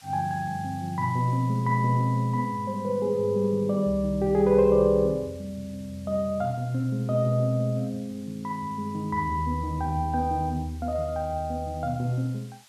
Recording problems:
hiss; slope +2 dB per octave, SNR 27 dB

